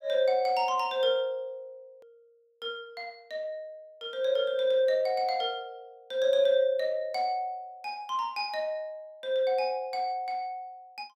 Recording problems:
hard cut with a click; at 2 s

